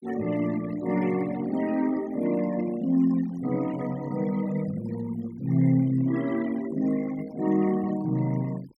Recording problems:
noise reduction artefacts; signal-to-artefact ratio 20 dB

